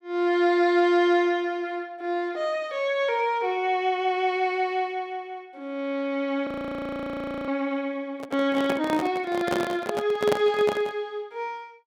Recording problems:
audio freezing; at 6.5 s for 1 s
microphone handling noise; from 8 to 11 s; peak +3 dB vs average level

